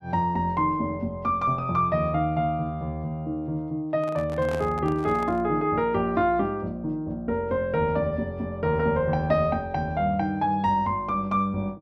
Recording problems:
handling noise; from 4 to 5.5 s; peak -6 dB vs average level

